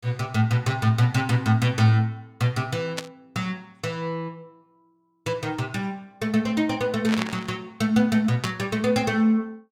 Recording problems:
burst of static; at 3 s, at 7 s and at 8.5 s; peak 0 dB vs average level

